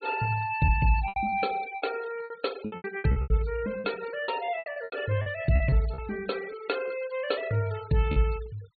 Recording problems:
low-pass filter; nothing above 4.5 kHz
noise reduction artefacts; signal-to-artefact ratio 17 dB
lost packets; 13% of the sound replaced, filled with repeated pitch periods

